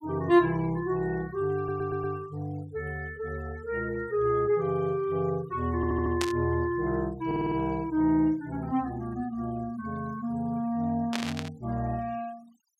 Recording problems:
denoising artefacts; signal-to-artefact ratio 26 dB
stutter; at 1.5 s, at 6 s and at 7.5 s
static burst; at 6 s and at 11 s; peak +2 dB vs average level

